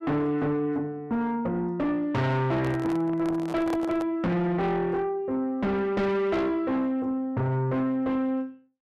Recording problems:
distortion; soft clipping, signal-to-distortion ratio 7 dB
microphone handling noise; from 2.5 to 4 s; peak -1 dB vs average level

